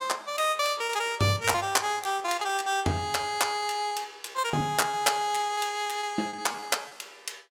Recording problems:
lost packets; 15% of the sound replaced, filled with repeated pitch periods

